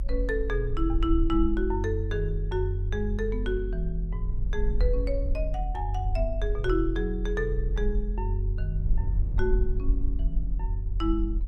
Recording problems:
rumble; below 44 Hz, strongest tone 42 Hz, SNR 0 dB

